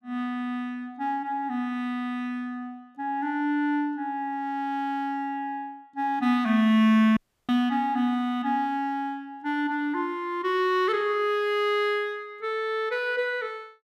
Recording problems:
audio cutting out; at 7 s

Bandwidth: 15 kHz